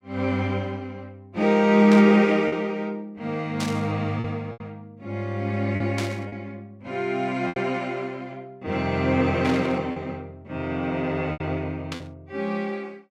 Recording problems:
packet loss; 4% of the sound replaced, filled with repeated pitch periods
burst of static; 5 times, first at 2 s; peak -4 dB vs average level

